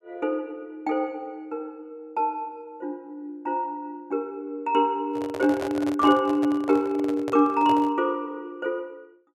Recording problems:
handling noise; from 5 to 8 s; peak -4 dB vs average level

